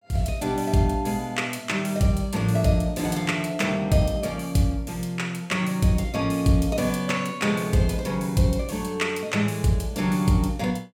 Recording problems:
none

